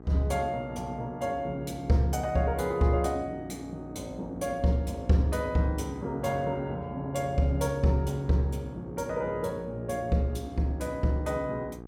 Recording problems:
hum; 60 Hz, harmonics up to 1.3 kHz, SNR 14 dB

